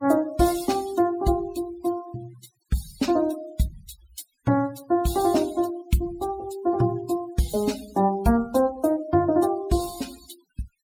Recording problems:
noise reduction artefacts; signal-to-artefact ratio 18 dB

